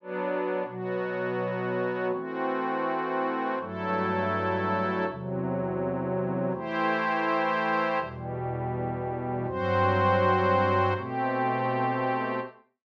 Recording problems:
none

